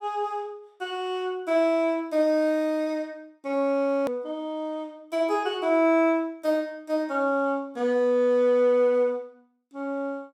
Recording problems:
edit click; at 4 s

